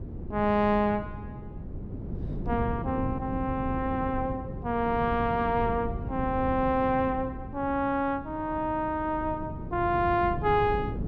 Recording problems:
wind noise; below 220 Hz, SNR 8 dB

